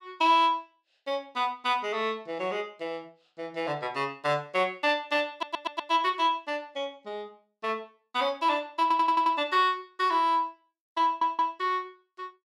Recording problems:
stutter; at 5.5 s, at 9 s and at 11 s

